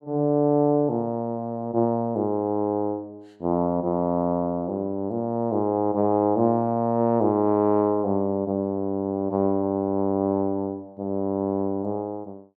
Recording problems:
none

